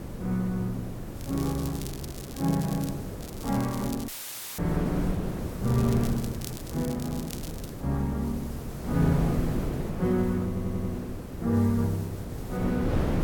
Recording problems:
hiss; slope 0 dB per octave, SNR 20 dB
wind noise; below 370 Hz, SNR 5 dB
crackle; from 1 to 3 s, at 3 s and from 5.5 to 7.5 s; loose cable, SNR 14 dB
audio cutting out; at 4 s for 0.5 s; filled with static
audio stuttering; at 10 s

